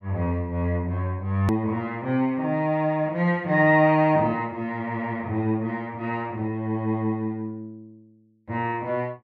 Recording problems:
edit click; at 1.5 s

